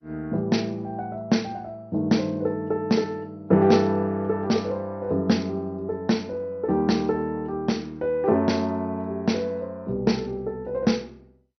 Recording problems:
lossy codec; MP2, log-spectral distance 2 dB, nothing above 6 kHz

